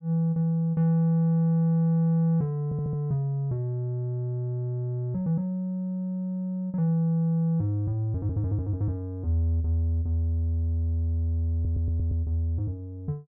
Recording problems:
audio stuttering; at 2.5 s and at 12 s

